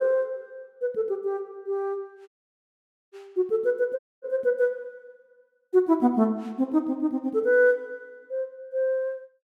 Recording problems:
audio cutting out; at 2.5 s for 1 s and at 4 s

